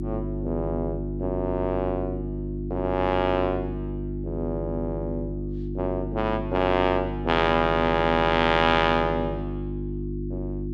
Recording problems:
hum; 50 Hz, harmonics up to 350 Hz, SNR 6 dB

